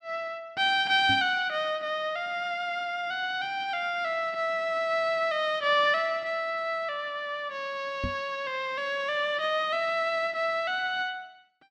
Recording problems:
microphone thump; at 1 s and at 8 s; peak -2 dB vs average level

